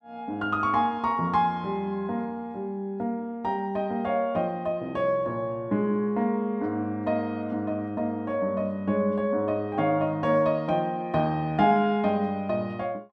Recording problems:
none

